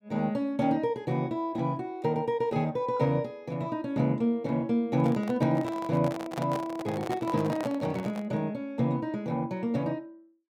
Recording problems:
microphone handling noise; from 5 to 8.5 s; peak -3 dB vs average level

